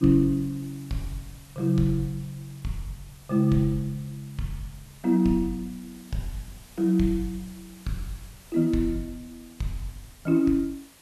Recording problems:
background hiss; slope -2 dB per octave, SNR 24 dB

